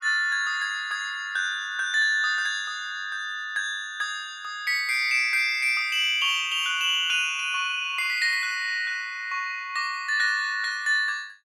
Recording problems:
none

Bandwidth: 16 kHz